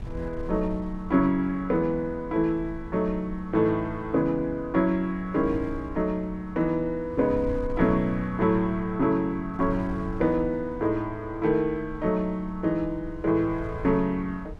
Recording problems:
wind noise; below 92 Hz, SNR 16 dB

